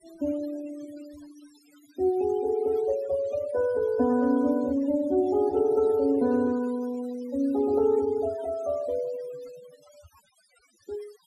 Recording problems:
denoising artefacts; signal-to-artefact ratio 21 dB

